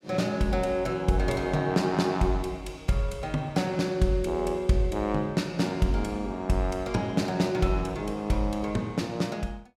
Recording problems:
none

